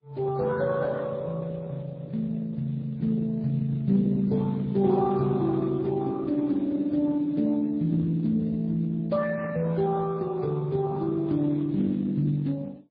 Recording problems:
lossy compression; Speex, then MP3, log-spectral distance 2 dB, nothing above 11.3 kHz

